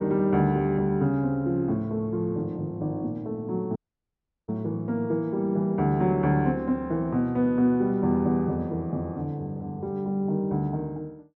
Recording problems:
treble missing; nothing above 8 kHz
audio cutting out; at 4 s for 0.5 s

